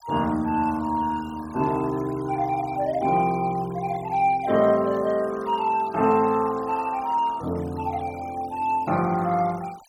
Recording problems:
denoising artefacts; signal-to-artefact ratio 23 dB

